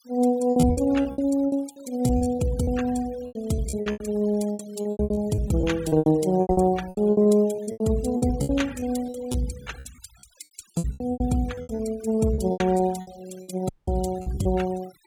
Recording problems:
noise reduction artefacts; signal-to-artefact ratio 20 dB
packet loss; 18% of the sound replaced, filled with repeated pitch periods
audio cutting out; at 14 s

